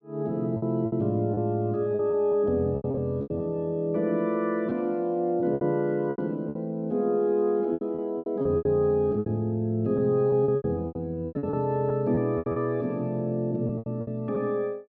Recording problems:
packet loss; 12% of the sound replaced, filled with repeated pitch periods

